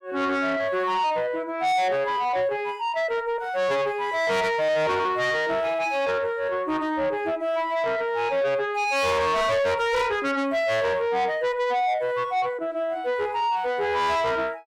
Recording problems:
distorted audio; soft clipping, signal-to-distortion ratio 8 dB

